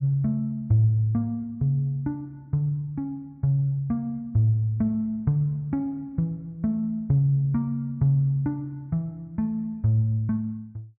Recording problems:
none

